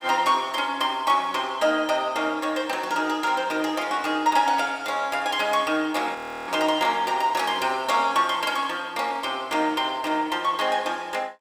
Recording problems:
frozen audio; at 6 s

